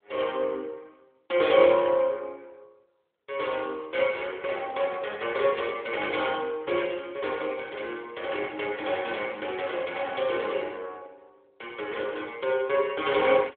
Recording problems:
phone line; 280 Hz to 3.6 kHz, AMR-NB

